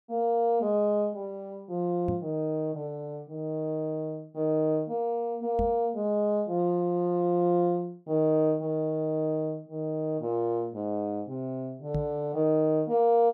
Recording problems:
microphone thump; at 2 s, at 5.5 s and at 12 s; peak -1 dB vs average level

